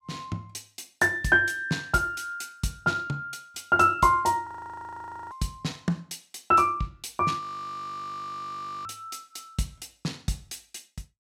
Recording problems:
audio freezing; at 4.5 s for 1 s and at 7.5 s for 1.5 s

